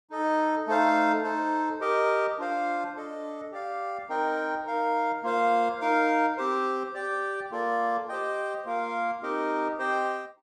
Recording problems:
none

